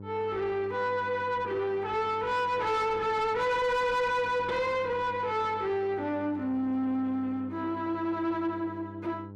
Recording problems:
distorted audio; soft clipping, signal-to-distortion ratio 7 dB
hum; 50 Hz, harmonics up to 1 kHz, SNR 16 dB

